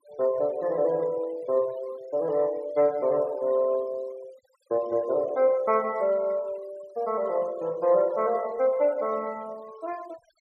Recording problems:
denoising artefacts; signal-to-artefact ratio 24 dB

